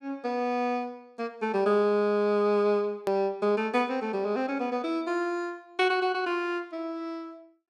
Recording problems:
click at an edit; at 3 s

